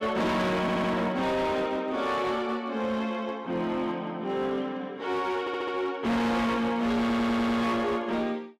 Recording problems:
distorted audio; hard clipping, signal-to-distortion ratio 8 dB
stutter; at 0.5 s, at 5.5 s and at 7 s

